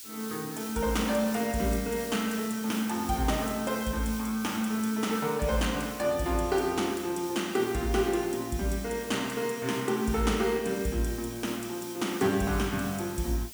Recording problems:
background hiss; SNR 13 dB

